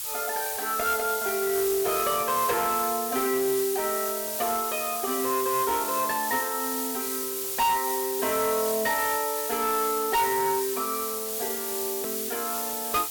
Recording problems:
distorted audio; hard clipping, uneven, signal-to-distortion ratio 11 dB
hiss; slope +3 dB per octave, SNR 2 dB
edit click; at 12 s

